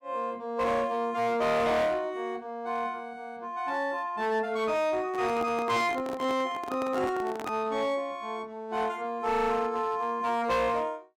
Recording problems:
distortion; hard clipping, signal-to-distortion ratio 10 dB
microphone handling noise; from 5 to 7.5 s; peak -4 dB vs average level

